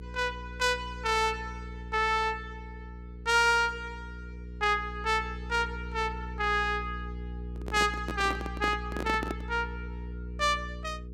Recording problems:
hum; 60 Hz, harmonics up to 480 Hz, SNR 11 dB
handling noise; from 7.5 to 9.5 s; peak -1 dB vs average level

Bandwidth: 16 kHz